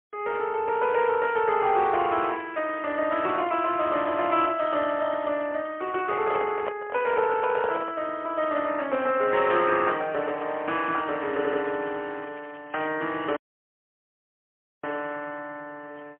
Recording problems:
telephone audio; 300 Hz to 3.2 kHz, AMR-NB, then MP3
crackle; from 2.5 to 4.5 s and from 11 to 15 s; loose cable, SNR 27 dB
microphone handling noise; from 6 to 8 s; peak -1 dB vs average level
audio stuttering; at 11 s
audio cutting out; at 13 s for 1.5 s

